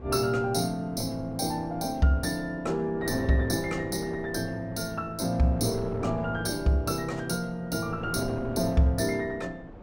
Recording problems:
wind noise; below 530 Hz, SNR 13 dB

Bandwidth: 16.5 kHz